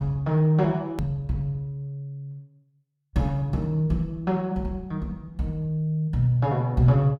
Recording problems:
click at an edit; at 1 s

